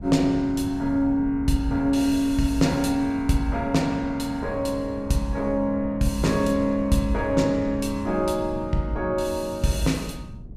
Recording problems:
wind noise; below 150 Hz, SNR 14 dB

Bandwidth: 15 kHz